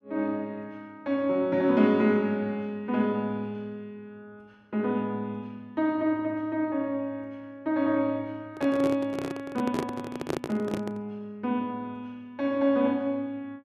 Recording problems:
handling noise; from 8.5 to 11 s; peak +2 dB vs average level

